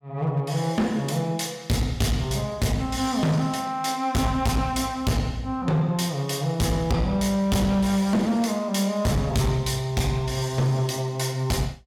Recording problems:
distortion; hard clipping, signal-to-distortion ratio 8 dB

